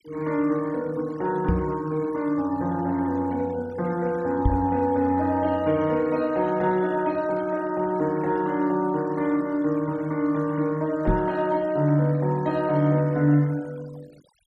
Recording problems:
denoising artefacts; signal-to-artefact ratio 23 dB
microphone thump; at 1.5 s, at 4.5 s and at 11 s; peak +5 dB vs average level

